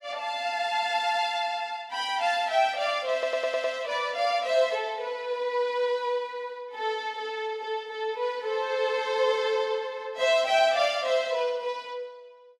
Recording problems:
stutter; at 3 s

